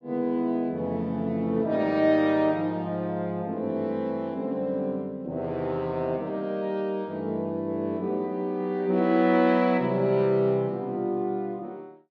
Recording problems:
none

